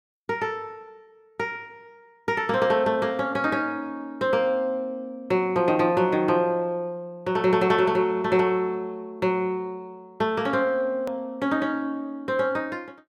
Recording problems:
hard cut with a click; at 11 s

